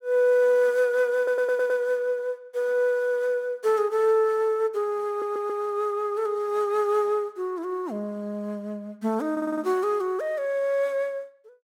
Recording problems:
stutter; at 1 s, at 5 s and at 9.5 s

